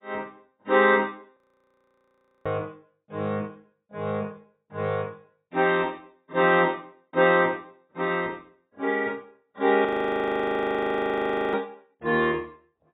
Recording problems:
codec artefacts; AAC, then AAC, log-spectral distance 3 dB, nothing above 3.3 kHz
frozen audio; at 1.5 s for 1 s and at 10 s for 1.5 s

